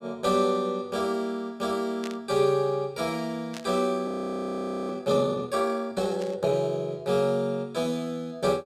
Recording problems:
static burst; at 2 s, at 3.5 s and at 6 s; peak -8 dB vs average level
audio freezing; at 4 s for 1 s

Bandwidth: 15.5 kHz